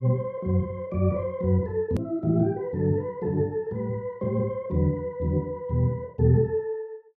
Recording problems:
edit click; at 2 s

